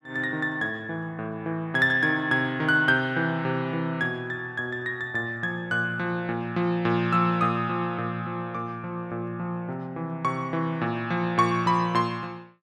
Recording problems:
none

